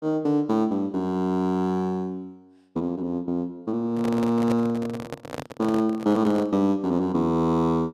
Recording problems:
microphone handling noise; from 4 to 6.5 s; peak -2 dB vs average level

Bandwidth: 14 kHz